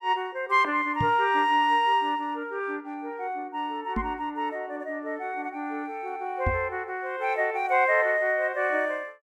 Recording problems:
microphone thump; at 1 s, at 4 s and at 6.5 s; peak +2 dB vs average level

